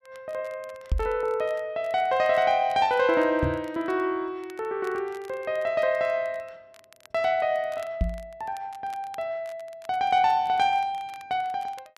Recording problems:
crackling; vinyl, SNR 28 dB
knock on the microphone; at 1 s, at 3.5 s and at 8 s; peak +4 dB vs average level

